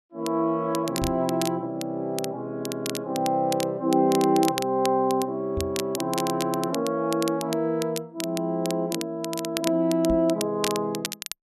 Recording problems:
crackling; vinyl, SNR 10 dB
microphone bump; at 1 s, at 5.5 s and at 10 s; peak -2 dB vs average level

